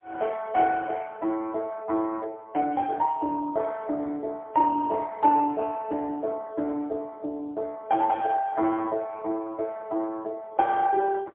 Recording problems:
telephone audio; 260 Hz to 2.2 kHz, AMR-NB, then MP3

